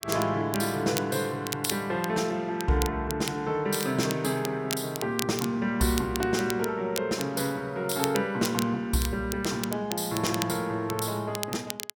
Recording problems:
crackling; vinyl, SNR 9 dB

